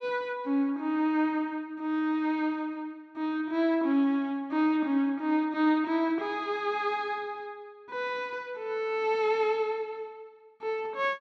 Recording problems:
none

